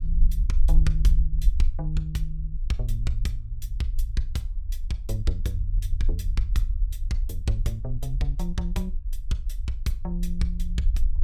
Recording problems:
low-frequency rumble; below 48 Hz, SNR -3 dB

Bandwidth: 17 kHz